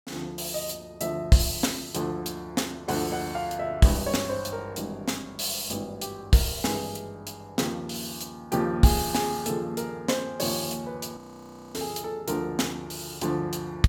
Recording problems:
audio freezing; at 11 s for 0.5 s

